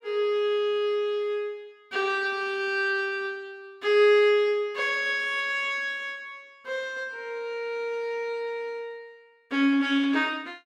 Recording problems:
none

